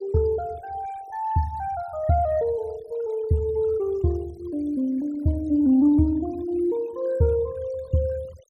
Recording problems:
denoising artefacts; signal-to-artefact ratio 25 dB

